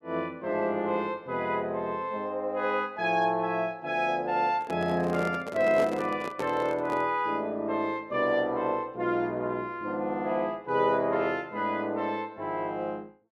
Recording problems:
microphone handling noise; from 4.5 to 7 s; peak -1 dB vs average level

